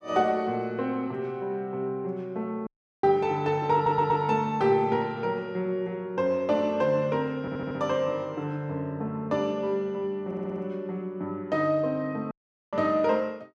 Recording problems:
dropout; at 2.5 s and at 12 s
audio stuttering; at 3.5 s, at 7.5 s and at 10 s

